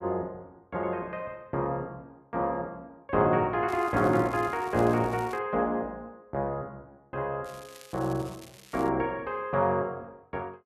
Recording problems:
crackling; from 3.5 to 5.5 s and from 7.5 to 9 s; loose cable, SNR 21 dB

